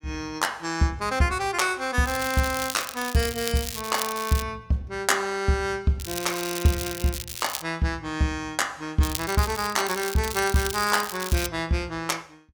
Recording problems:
crackle; from 2 to 4.5 s, from 6 to 7.5 s and from 9 to 11 s; loose cable, SNR 7 dB

